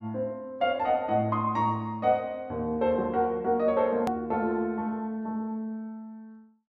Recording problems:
edit click; at 4 s

